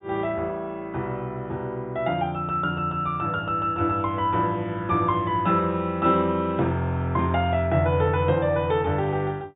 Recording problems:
treble missing; nothing above 4 kHz

